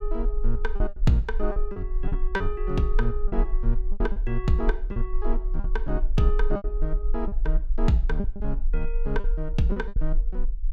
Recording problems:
rumble; below 38 Hz, strongest tone 20 Hz, SNR 0 dB
packet loss; 9% of the sound replaced, filled with repeated pitch periods

